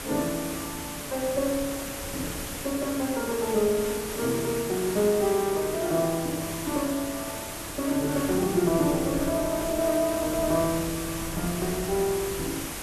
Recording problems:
background hiss; slope -3 dB per octave, SNR 7 dB
wind noise; below 200 Hz, SNR 17 dB

